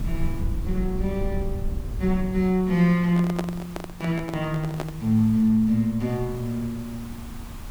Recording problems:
background hiss; SNR 21 dB
rumble; below 86 Hz, SNR 11 dB
handling noise; from 3 to 5 s; peak -1 dB vs average level

